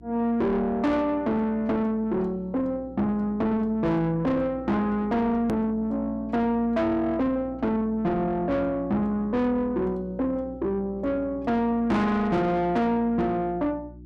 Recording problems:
distortion; soft clipping, signal-to-distortion ratio 8 dB
electrical hum; 60 Hz, harmonics up to 360 Hz, SNR 20 dB
click at an edit; at 5.5 s

